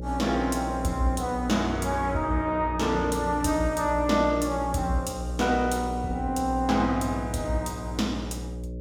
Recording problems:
hum; 60 Hz, harmonics up to 600 Hz, SNR 9 dB

